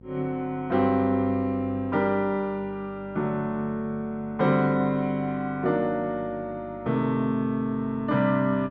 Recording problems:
hum; 50 Hz, harmonics up to 800 Hz, SNR 21 dB

